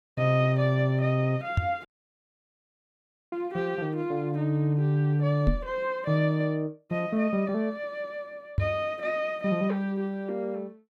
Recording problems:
microphone bump; at 1.5 s, at 5.5 s and at 8.5 s; peak +6 dB vs average level
audio cutting out; at 2 s for 1.5 s

